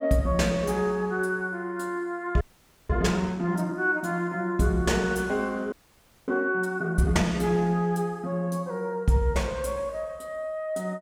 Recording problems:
audio freezing; at 2.5 s and at 5.5 s for 0.5 s

